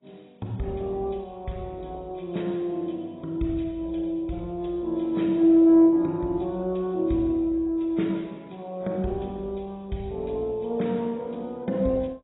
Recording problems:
lossy compression; MP2, then AAC, log-spectral distance 3 dB, nothing above 3.8 kHz

